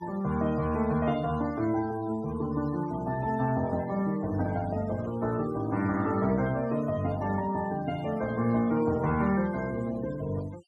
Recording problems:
noise reduction artefacts; signal-to-artefact ratio 19 dB

